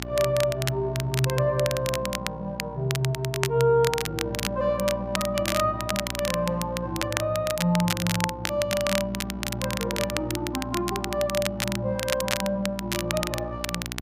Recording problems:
hum; 60 Hz, harmonics up to 1.1 kHz, SNR 11 dB
crackling; vinyl, SNR 5 dB

